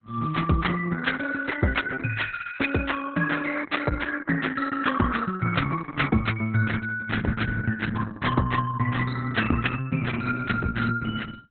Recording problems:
lossy compression; Opus, then Opus, log-spectral distance 6 dB, nothing above 4 kHz

